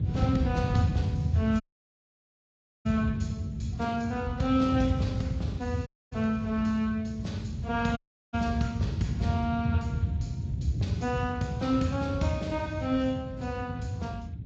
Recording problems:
lossy compression; Speex, then Vorbis, log-spectral distance 2 dB
wind noise; below 150 Hz, SNR 1 dB
dropout; at 1.5 s for 1.5 s, at 6 s and at 8 s

